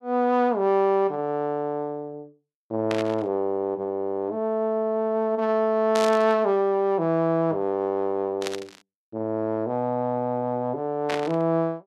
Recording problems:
burst of static; 4 times, first at 3 s; peak -3 dB vs average level

